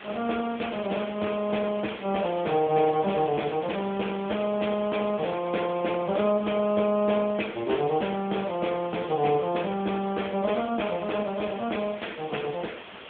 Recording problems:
phone line; 260 Hz to 3.4 kHz, AMR-NB
hiss; SNR 14 dB

